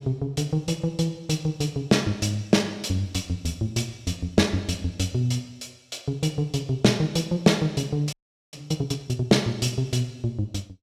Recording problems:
audio freezing; at 8 s

